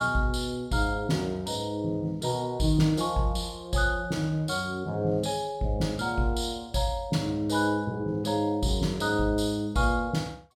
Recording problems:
none

